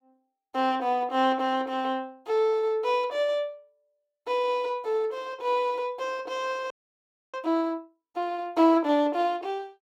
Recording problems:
audio freezing; at 6.5 s for 0.5 s

